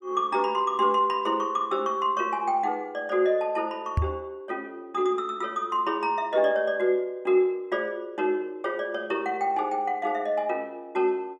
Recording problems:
microphone thump; at 4 s; peak +5 dB vs average level

